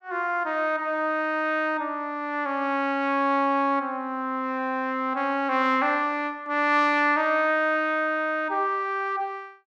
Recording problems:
none

